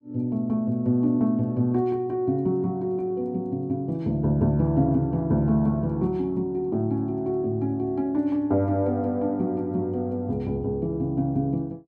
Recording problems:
none

